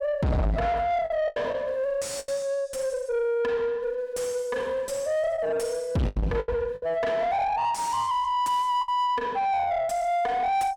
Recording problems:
distorted audio; soft clipping, signal-to-distortion ratio 5 dB
packet loss; 5% of the sound replaced, filled with the last packet

